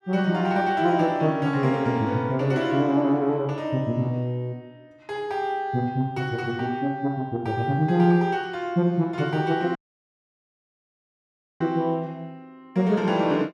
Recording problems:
dropout; at 10 s for 2 s

